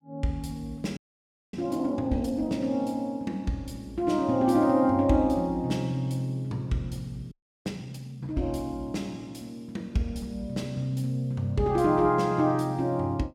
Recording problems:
frozen audio; at 1 s for 0.5 s and at 7.5 s

